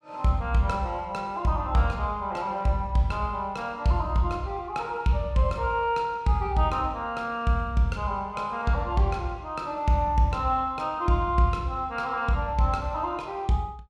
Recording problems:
none

